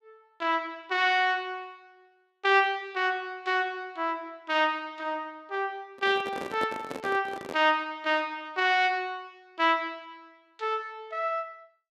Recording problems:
microphone handling noise; from 6 to 7.5 s; peak -4 dB vs average level

